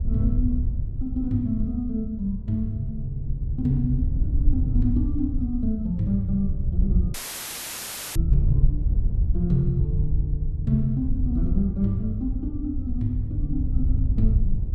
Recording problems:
wind noise; below 78 Hz, SNR 0 dB
dropout; at 7 s for 1 s; filled with static

